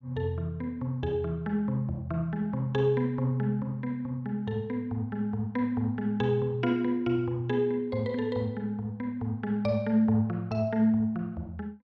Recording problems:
none

